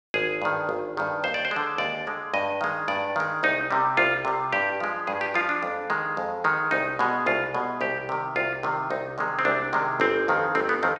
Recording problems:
none

